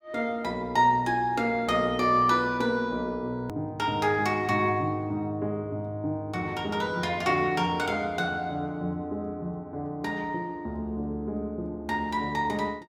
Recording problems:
hard cut with a click; at 3.5 s

